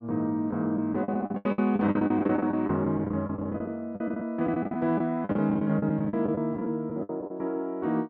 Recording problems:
packet loss; 17% of the sound replaced, filled with the last packet

